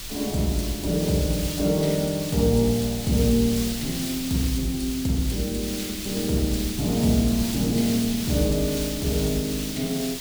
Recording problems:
background hiss; SNR 7 dB
rumble; below 160 Hz, SNR 19 dB

